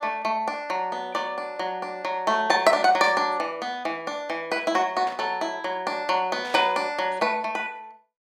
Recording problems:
burst of static; at 3 s, at 5 s and at 6.5 s; peak -10 dB vs average level

